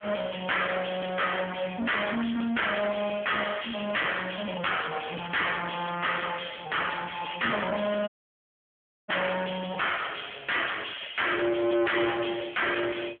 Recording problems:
phone line; 190 Hz to 3.4 kHz, AMR-NB
distorted audio; soft clipping, signal-to-distortion ratio 6 dB
crackle; from 2 to 4 s and from 11 to 12 s; loose cable, SNR 21 dB
audio cutting out; at 8 s for 1 s

